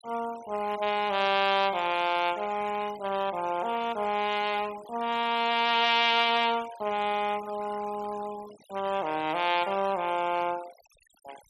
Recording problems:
denoising artefacts; signal-to-artefact ratio 18 dB

